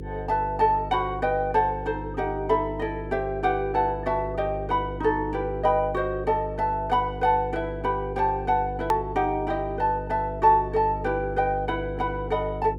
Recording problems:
hum; 50 Hz, harmonics up to 500 Hz, SNR 11 dB
edit click; at 9 s

